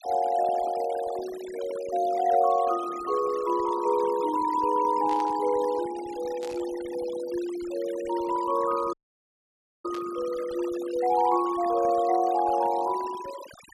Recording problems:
denoising artefacts; signal-to-artefact ratio 16 dB
burst of static; at 5 s, at 6.5 s and at 10 s; peak -12 dB vs average level
dropout; at 9 s for 1 s

